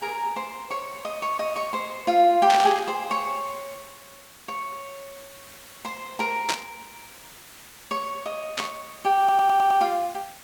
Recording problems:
hiss; slope -1 dB per octave, SNR 20 dB
burst of static; at 2.5 s, at 6.5 s and at 8.5 s; peak +3 dB vs average level
audio stuttering; at 9 s

